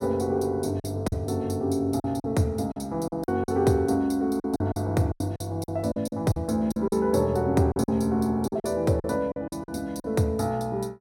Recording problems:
lost packets; 11% of the sound replaced, filled with silence

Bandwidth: 16 kHz